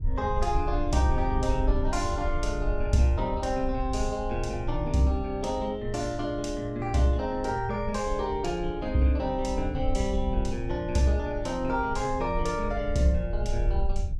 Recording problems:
wind on the microphone; below 66 Hz, SNR 6 dB

